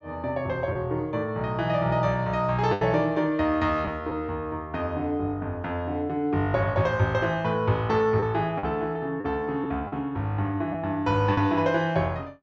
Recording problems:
treble cut off; nothing above 8 kHz
packet loss; 2% of the sound replaced, filled with the last packet

